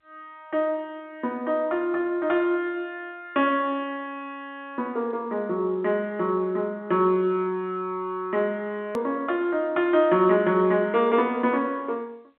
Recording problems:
phone line; 280 Hz to 3.5 kHz, G.711
edit click; at 9 s

